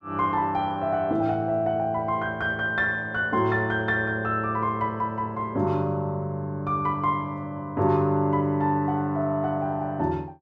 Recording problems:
none

